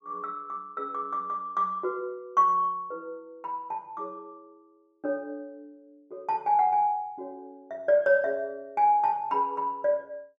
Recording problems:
none

